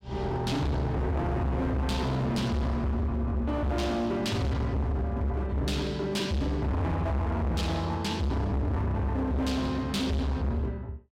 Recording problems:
distortion; hard clipping, signal-to-distortion ratio 6 dB

